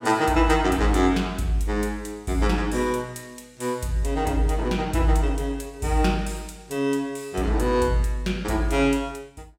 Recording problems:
none

